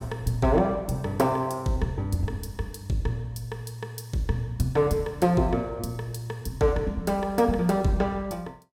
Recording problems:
none

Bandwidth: 16.5 kHz